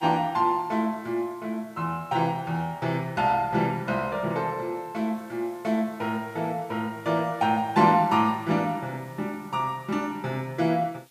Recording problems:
hiss; slope +1 dB per octave, SNR 29 dB

